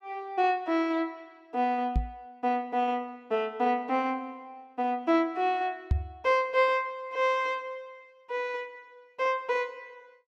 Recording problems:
microphone bump; at 2 s and at 6 s; peak +6 dB vs average level

